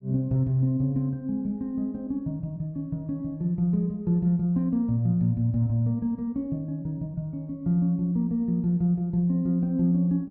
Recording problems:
none

